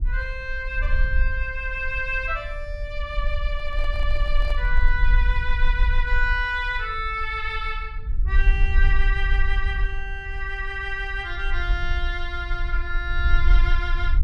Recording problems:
low-frequency rumble; below 46 Hz, SNR -1 dB
handling noise; from 3.5 to 5 s; peak -9 dB vs average level

